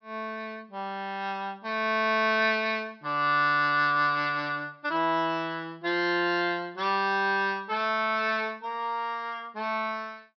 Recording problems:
treble cut off; nothing above 5.5 kHz

